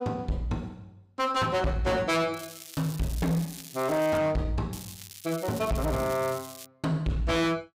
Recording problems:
distorted audio; hard clipping, uneven, signal-to-distortion ratio 6 dB
crackling; from 2.5 to 4 s and from 4.5 to 6.5 s; loose cable, SNR 14 dB

